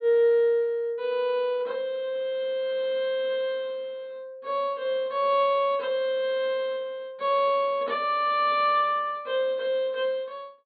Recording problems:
low-pass filter; nothing above 4.6 kHz

